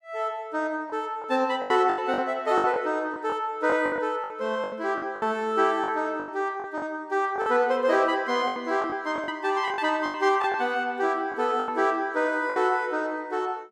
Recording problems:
lost packets; 11% of the sound replaced, filled with the last packet

